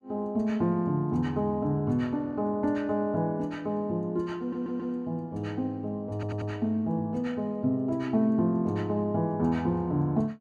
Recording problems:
stutter; at 4.5 s and at 6 s

